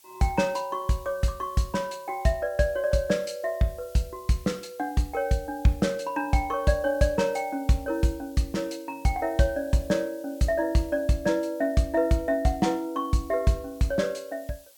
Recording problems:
hiss; SNR 25 dB

